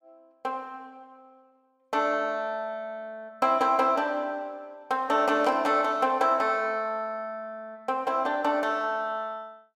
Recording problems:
burst of static; at 5.5 s; peak -15 dB vs average level

